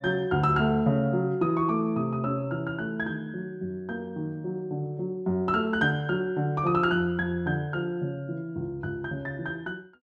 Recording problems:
none

